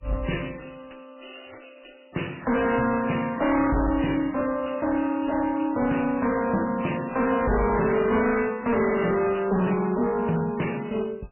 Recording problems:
codec artefacts; MP3, then MP3, log-spectral distance 8 dB, nothing above 2.9 kHz
distortion; soft clipping, signal-to-distortion ratio 7 dB

